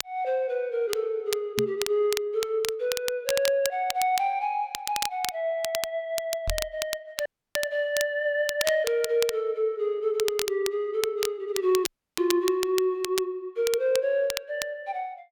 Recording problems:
crackling; vinyl, SNR 7 dB
microphone thump; at 1.5 s and at 6.5 s; peak -2 dB vs average level
audio cutting out; at 7.5 s and at 12 s

